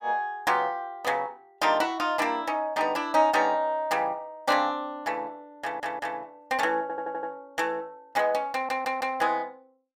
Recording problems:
audio stuttering; at 5.5 s, at 7 s and at 8.5 s

